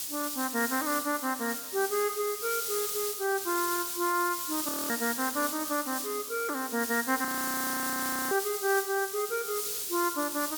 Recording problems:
hiss; SNR 2 dB
frozen audio; at 4.5 s and at 7.5 s for 1 s

